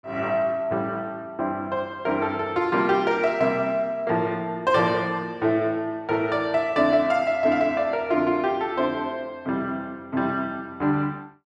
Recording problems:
none

